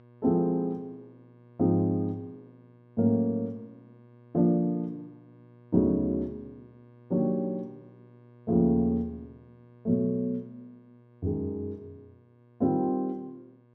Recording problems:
hum; 60 Hz, harmonics up to 1.6 kHz, SNR 27 dB

